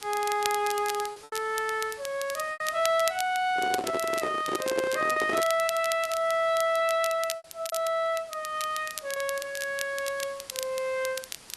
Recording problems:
lossy codec; AAC, log-spectral distance 4 dB
background hiss; slope -1 dB per octave, SNR 21 dB
crackle; vinyl, SNR 10 dB
packet loss; 4% of the sound replaced, filled with repeated pitch periods
handling noise; from 3.5 to 5.5 s; peak 0 dB vs average level

